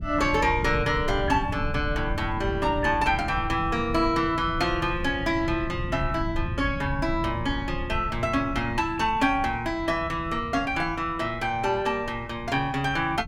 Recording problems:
low-frequency rumble; below 130 Hz, SNR 9 dB

